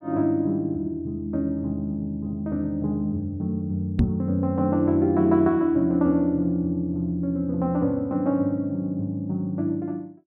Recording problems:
microphone bump; at 4 s; peak +7 dB vs average level

